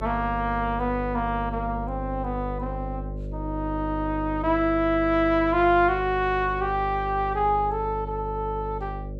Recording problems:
hum; 50 Hz, harmonics up to 600 Hz, SNR 9 dB

